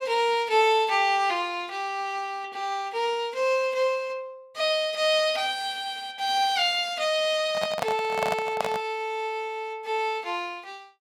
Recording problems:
microphone handling noise; from 7.5 to 9 s; peak +2 dB vs average level

